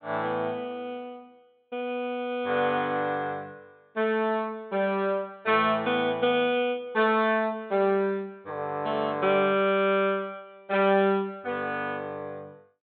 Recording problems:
treble missing; nothing above 4 kHz

